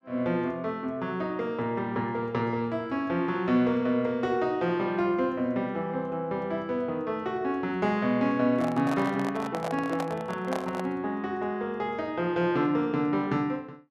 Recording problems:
microphone handling noise; from 8.5 to 11 s; peak -1 dB vs average level

